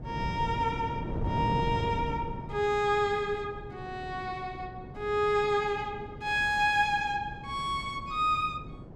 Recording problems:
wind noise; below 280 Hz, SNR 9 dB

